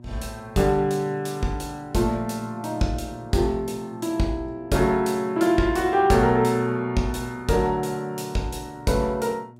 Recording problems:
hum; 60 Hz, harmonics up to 960 Hz, SNR 24 dB

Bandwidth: 16 kHz